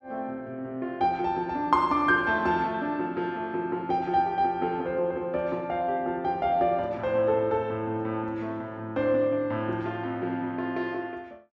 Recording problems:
none

